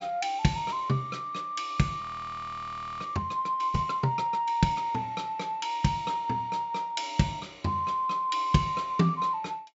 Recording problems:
low-pass filter; nothing above 8 kHz
audio freezing; at 2 s for 1 s

